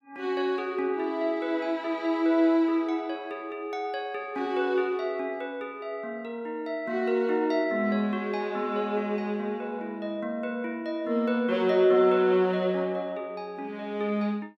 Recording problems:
none

